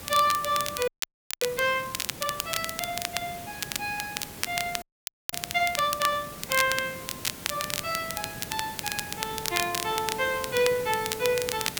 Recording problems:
background hiss; slope -3 dB per octave, SNR 10 dB
crackle; vinyl, SNR 4 dB
frozen audio; at 1 s for 0.5 s and at 5 s for 0.5 s

